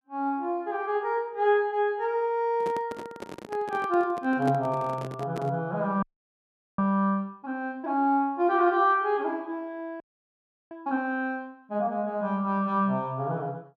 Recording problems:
handling noise; from 2.5 to 5.5 s; peak -3 dB vs average level
audio freezing; at 6 s for 1 s and at 10 s for 0.5 s

